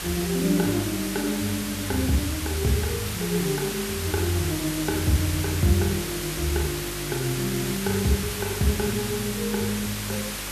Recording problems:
mains hum; 50 Hz, harmonics up to 600 Hz, SNR 14 dB
hiss; slope +1 dB per octave, SNR 4 dB

